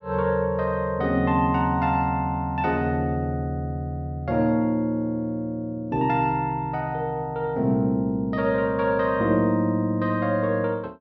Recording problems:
none

